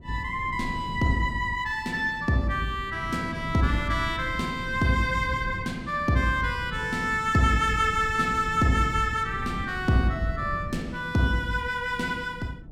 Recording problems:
wind noise; below 170 Hz, SNR 13 dB

